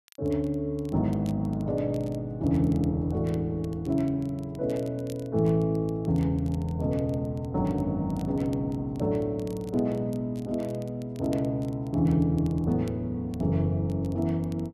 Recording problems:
crackling; vinyl, SNR 28 dB

